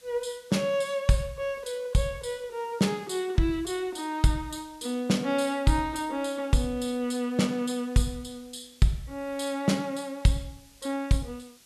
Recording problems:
hiss; SNR 26 dB

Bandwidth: 13 kHz